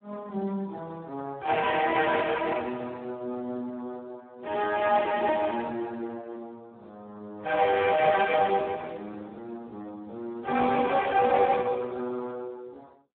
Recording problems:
telephone audio; 260 Hz to 2.3 kHz, Speex

